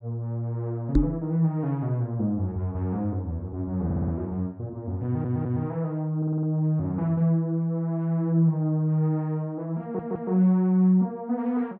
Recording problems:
knock on the microphone; at 1 s; peak +8 dB vs average level
audio stuttering; 4 times, first at 4 s

